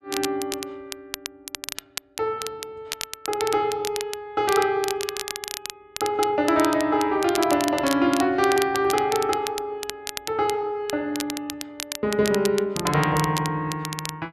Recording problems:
crackling; vinyl, SNR 9 dB

